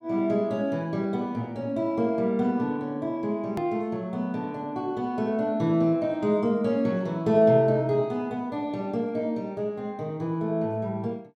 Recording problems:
edit click; at 3.5 s

